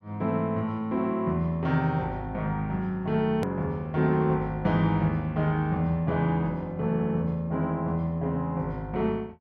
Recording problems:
hard cut with a click; at 3.5 s

